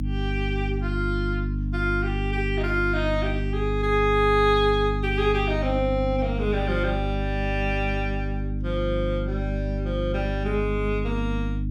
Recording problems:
mains hum; 50 Hz, harmonics up to 300 Hz, SNR 2 dB

